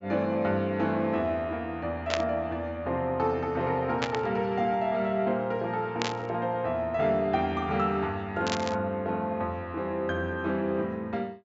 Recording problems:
low-pass filter; nothing above 8 kHz
static burst; 4 times, first at 2 s; peak +4 dB vs average level

